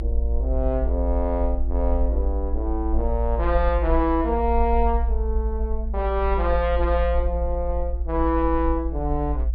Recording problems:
low-pass filter; nothing above 5.5 kHz
low-frequency rumble; below 58 Hz, strongest tone 58 Hz, SNR 1 dB

